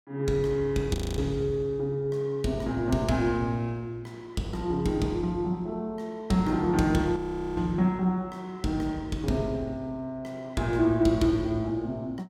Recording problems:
audio freezing; at 1 s and at 7 s

